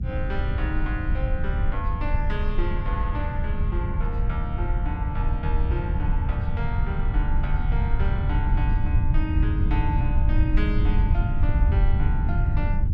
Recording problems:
low-frequency rumble; below 90 Hz, SNR -8 dB

